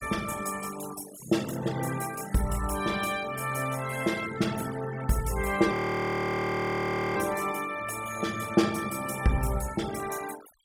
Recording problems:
noise reduction artefacts; signal-to-artefact ratio 14 dB
frozen audio; at 5.5 s for 1.5 s

